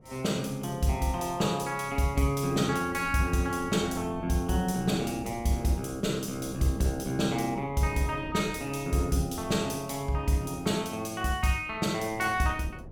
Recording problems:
wind on the microphone; below 330 Hz, SNR 16 dB

